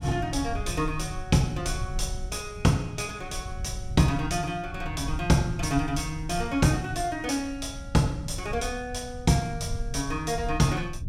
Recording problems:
rumble; below 90 Hz, SNR 10 dB

